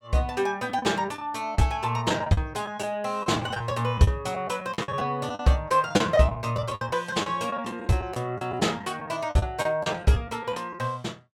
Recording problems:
lost packets; 11% of the sound replaced, filled with the last packet

